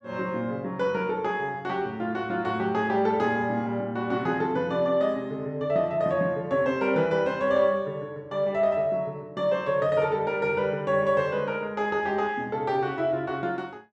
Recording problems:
none

